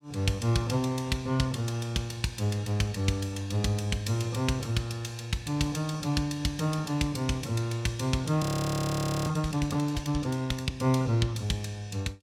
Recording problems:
audio freezing; at 8.5 s for 1 s

